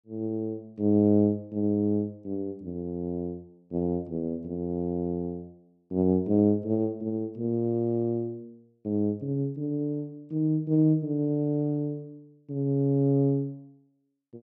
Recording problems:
none

